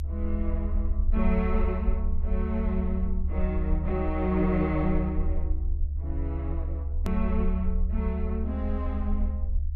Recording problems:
low-frequency rumble; below 72 Hz, SNR -1 dB
edit click; at 7 s

